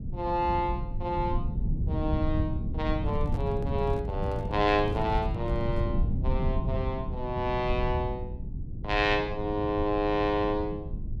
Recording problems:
rumble; below 130 Hz, SNR 3 dB
microphone handling noise; from 3 to 6 s; peak -8 dB vs average level

